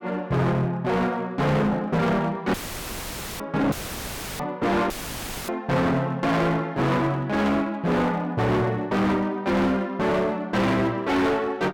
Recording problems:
distorted audio; hard clipping, uneven, signal-to-distortion ratio 6 dB
dropout; at 2.5 s for 1 s, at 3.5 s for 0.5 s and at 5 s for 0.5 s; filled with static

